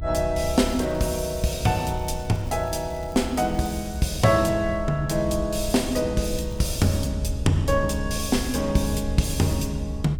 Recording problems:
rumble; below 86 Hz, SNR 9 dB
crackling; from 0.5 to 4 s and at 6.5 s; loose cable, SNR 26 dB

